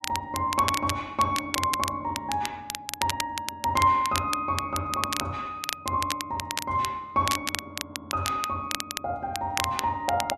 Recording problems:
crackle; vinyl, SNR 5 dB

